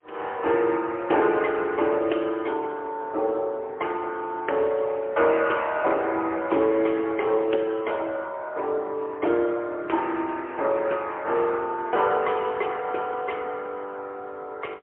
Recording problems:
phone line; 280 Hz to 3.4 kHz, AMR-NB, then MP3

